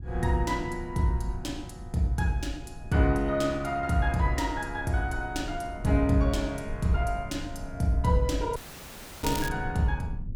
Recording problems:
low-frequency rumble; below 110 Hz, SNR 13 dB
dropout; at 8.5 s for 0.5 s
crackling; at 9 s; loose cable, SNR 10 dB

